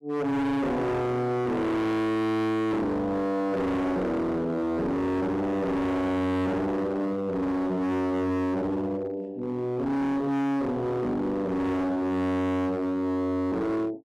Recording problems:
distorted audio; hard clipping, uneven, signal-to-distortion ratio 6 dB

